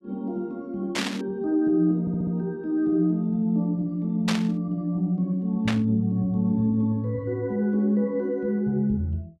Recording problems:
burst of static; at 1 s, at 4.5 s and at 5.5 s; peak +1 dB vs average level
audio stuttering; at 2 s

